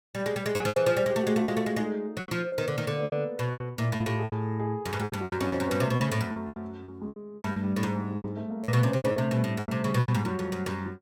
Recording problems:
packet loss; 15% of the sound replaced, filled with repeated pitch periods

